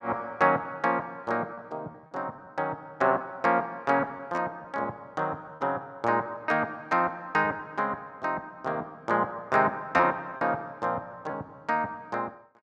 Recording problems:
packet loss; 5% of the sound replaced, filled with repeated pitch periods

